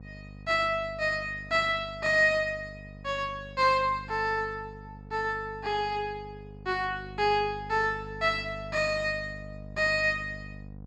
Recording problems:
hum; 50 Hz, harmonics up to 750 Hz, SNR 17 dB

